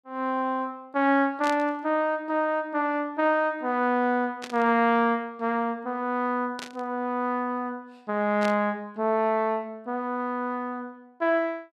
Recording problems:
static burst; 4 times, first at 1.5 s; peak -6 dB vs average level

